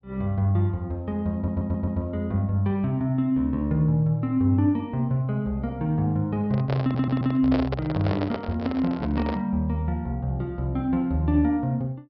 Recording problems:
treble missing; nothing above 5.5 kHz
audio stuttering; at 1.5 s and at 7 s
handling noise; from 6.5 to 9.5 s; peak 0 dB vs average level

